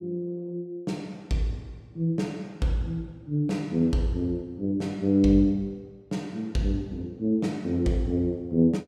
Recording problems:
none

